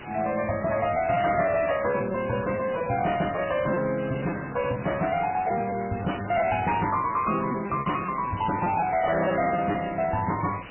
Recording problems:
lossy codec; MP3, log-spectral distance 15 dB, nothing above 2.5 kHz
distortion; hard clipping, signal-to-distortion ratio 11 dB
hiss; SNR 16 dB
lost packets; 11% of the sound replaced, filled with repeated pitch periods
crackle; from 7 to 9 s; loose cable, SNR 29 dB

